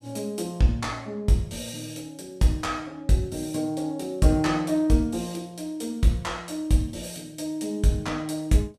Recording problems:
none

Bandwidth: 15 kHz